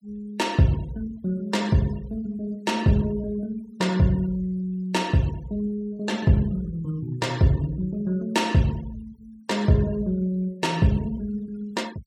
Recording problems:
denoising artefacts; signal-to-artefact ratio 23 dB

